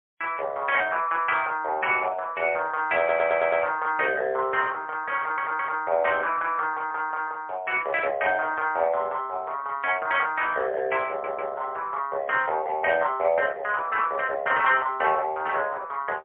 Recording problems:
phone line; 340 Hz to 3.3 kHz, AMR-NB, then MP3
audio stuttering; at 3 s, at 5 s and at 11 s

